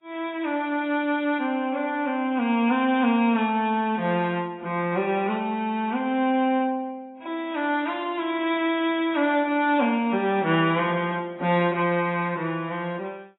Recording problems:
lossy codec; AAC, log-spectral distance 2 dB, nothing above 3.3 kHz

